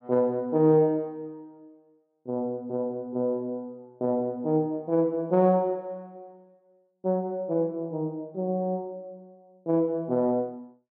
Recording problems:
none

